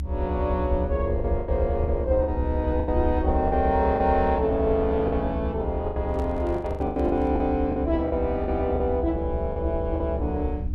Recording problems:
hum; 60 Hz, harmonics up to 300 Hz, SNR 13 dB
low-frequency rumble; below 76 Hz, SNR 5 dB
packet loss; 10% of the sound replaced, filled with the last packet
microphone handling noise; from 6 to 7.5 s; peak -10 dB vs average level

